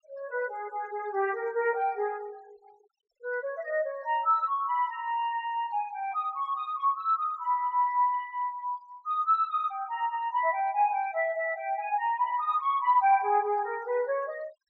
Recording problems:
low-pass filter; nothing above 8 kHz
denoising artefacts; signal-to-artefact ratio 28 dB

